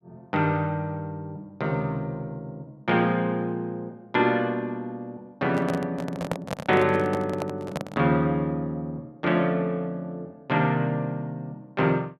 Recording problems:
microphone handling noise; from 5.5 to 8 s; peak +2 dB vs average level

